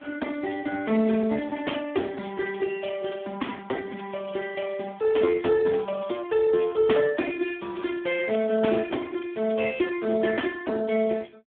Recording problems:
phone line; 240 Hz to 3.4 kHz, Speex

